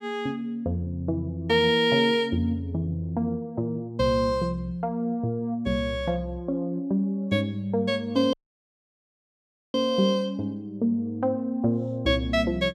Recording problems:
audio cutting out; at 8.5 s for 1.5 s

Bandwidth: 15.5 kHz